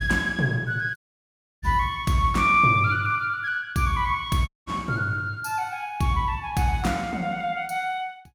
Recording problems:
dropout; at 1 s for 0.5 s and at 4.5 s

